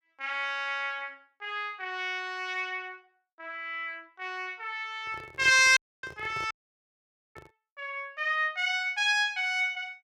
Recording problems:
handling noise; from 5 to 7.5 s; peak -11 dB vs average level
dropout; at 6 s and at 6.5 s for 1 s

